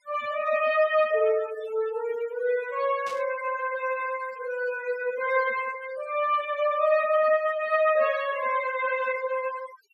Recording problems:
noise reduction artefacts; signal-to-artefact ratio 16 dB
static burst; at 3 s; peak -13 dB vs average level

